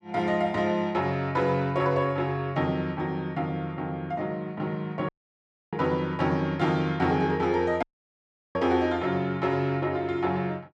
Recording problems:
audio cutting out; at 5 s for 0.5 s and at 8 s for 0.5 s

